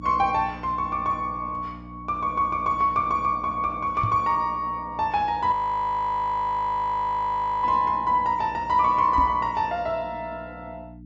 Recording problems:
treble cut off; nothing above 8 kHz
hum; 60 Hz, harmonics up to 360 Hz, SNR 19 dB
microphone bump; at 4 s and at 9 s; peak -1 dB vs average level
frozen audio; at 5.5 s for 2 s

